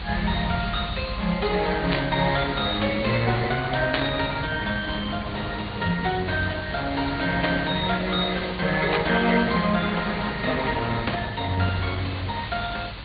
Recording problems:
low-pass filter; nothing above 3.8 kHz
lossy codec; Opus, log-spectral distance 8 dB
background hiss; SNR 13 dB
rumble; below 120 Hz, strongest tone 48 Hz, SNR 8 dB
burst of static; 5 times, first at 2 s; peak +3 dB vs average level

